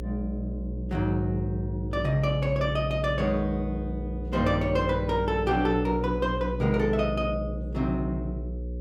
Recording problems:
hum; 60 Hz, harmonics up to 540 Hz, SNR 7 dB

